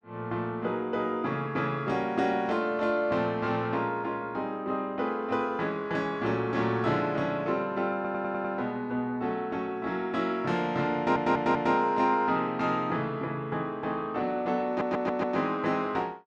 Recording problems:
stutter; at 8 s, at 11 s and at 15 s

